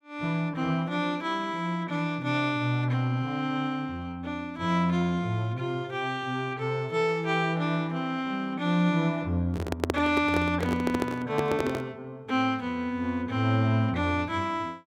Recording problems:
microphone handling noise; from 9.5 to 12 s; peak +5 dB vs average level

